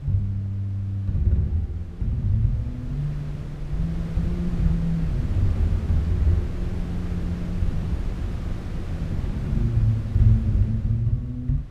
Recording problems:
wind on the microphone; below 130 Hz, SNR 8 dB

